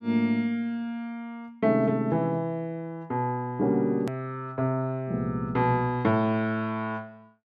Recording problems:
edit click; at 4 s

